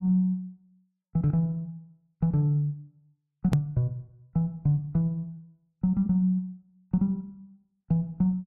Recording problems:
edit click; at 3.5 s

